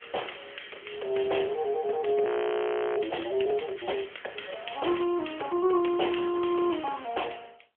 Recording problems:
telephone audio; 300 Hz to 3.3 kHz, AMR-NB
frozen audio; at 2.5 s for 0.5 s

